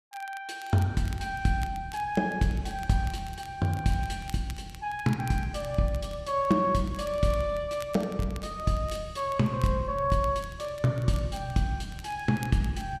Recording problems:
crackling; vinyl, SNR 22 dB

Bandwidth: 14 kHz